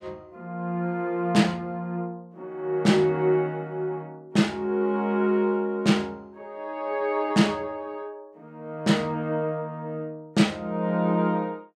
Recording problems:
none

